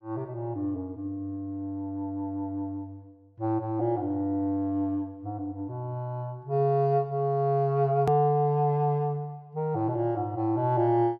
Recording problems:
edit click; at 8 s

